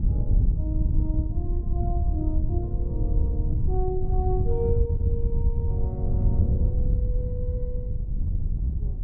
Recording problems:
wind on the microphone; below 92 Hz, SNR -9 dB

